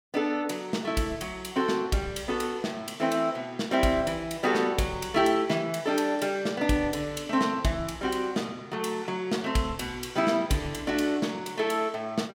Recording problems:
none

